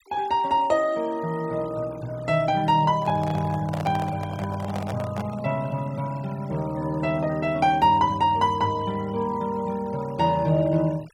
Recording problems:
denoising artefacts; signal-to-artefact ratio 23 dB
handling noise; from 3 to 5.5 s; peak -4 dB vs average level

